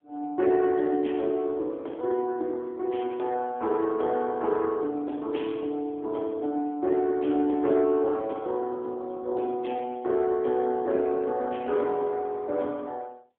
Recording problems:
phone line; 240 Hz to 3.4 kHz, AMR-NB

